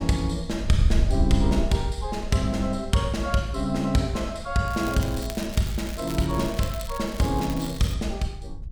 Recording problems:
wind noise; below 72 Hz, SNR 8 dB
crackle; from 4.5 to 8 s; loose cable, SNR 15 dB

